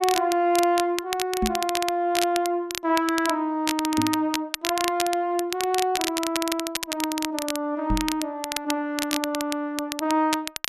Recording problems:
crackling; vinyl, SNR 5 dB
knock on the microphone; at 1.5 s, at 4 s and at 8 s; peak +3 dB vs average level

